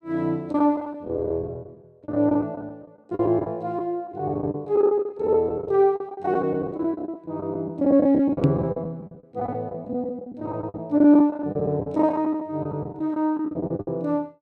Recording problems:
lost packets; 17% of the sound replaced, filled with the last packet
microphone thump; at 8.5 s; peak +8 dB vs average level

